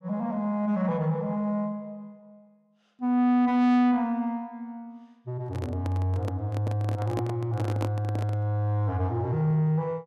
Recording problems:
distorted audio; soft clipping, signal-to-distortion ratio 11 dB
handling noise; from 5.5 to 8.5 s; peak -1 dB vs average level

